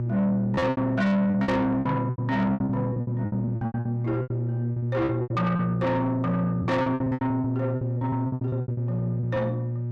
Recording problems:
distortion; soft clipping, signal-to-distortion ratio 7 dB
mains hum; 60 Hz, harmonics up to 600 Hz, SNR 3 dB
packet loss; 19% of the sound replaced, filled with repeated pitch periods

